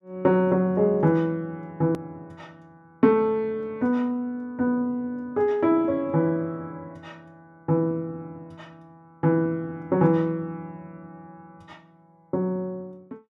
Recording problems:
click at an edit; at 2 s

